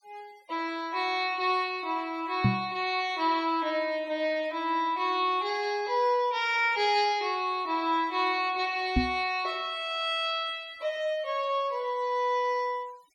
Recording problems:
noise reduction artefacts; signal-to-artefact ratio 26 dB
microphone bump; at 2.5 s and at 9 s; peak +7 dB vs average level

